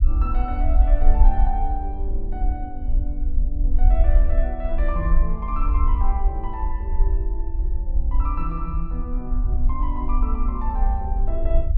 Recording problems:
rumble; below 50 Hz, strongest tone 22 Hz, SNR -8 dB

